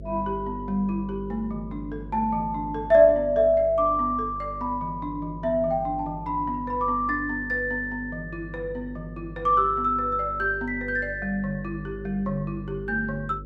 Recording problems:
hum; 50 Hz, harmonics up to 550 Hz, SNR 15 dB

